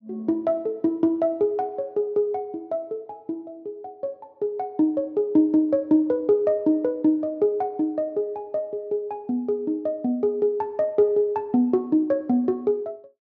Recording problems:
treble missing; nothing above 6.7 kHz

